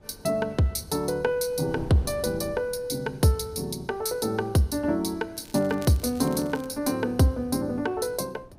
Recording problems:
wind noise; below 370 Hz, SNR 20 dB
crackling; from 5.5 to 6.5 s; loose cable, SNR 22 dB

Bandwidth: 15.5 kHz